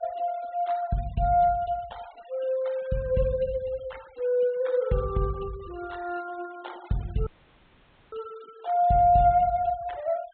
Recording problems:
treble cut off; nothing above 4 kHz
denoising artefacts; signal-to-artefact ratio 24 dB
dropout; at 7.5 s for 1 s

